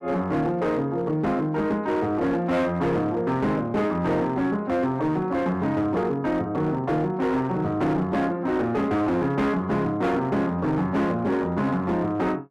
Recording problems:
distortion; hard clipping, uneven, signal-to-distortion ratio 10 dB

